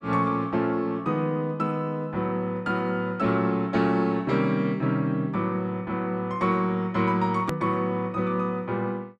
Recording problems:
hard cut with a click; at 7.5 s

